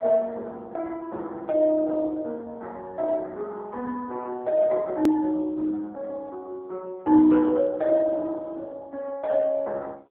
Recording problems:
telephone audio; 220 Hz to 3.4 kHz, AMR-NB
edit click; at 5 s

